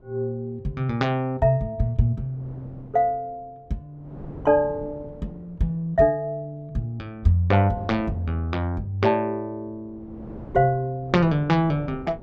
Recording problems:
wind on the microphone; below 380 Hz, SNR 18 dB

